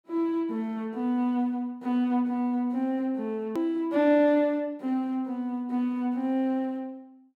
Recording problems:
hard cut with a click; at 3.5 s

